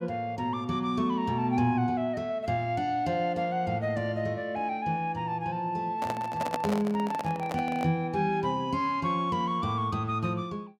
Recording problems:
microphone handling noise; from 6 to 8 s; peak +2 dB vs average level

